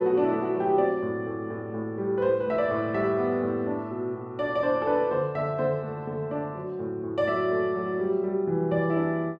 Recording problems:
none

